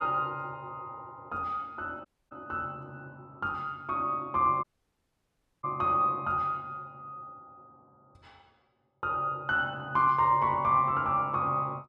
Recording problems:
dropout; at 2 s and at 4.5 s for 1 s

